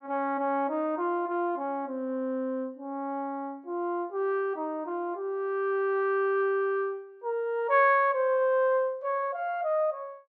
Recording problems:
none

